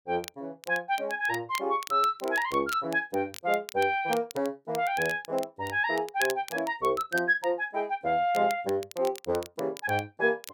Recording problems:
crackling; vinyl, SNR 16 dB

